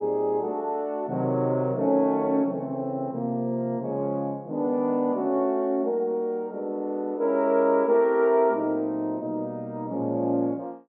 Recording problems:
none

